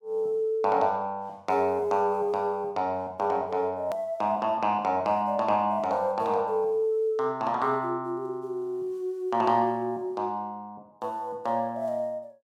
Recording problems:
hard cut with a click; at 4 s

